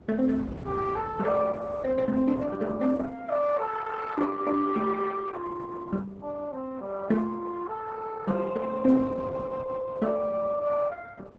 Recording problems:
lossy compression; Opus, then Opus, log-spectral distance 3 dB, nothing above 7.8 kHz
wind noise; below 390 Hz, SNR 17 dB

